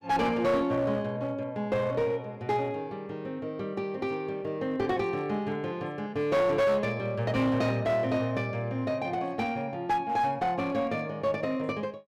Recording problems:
distorted audio; hard clipping, uneven, signal-to-distortion ratio 11 dB

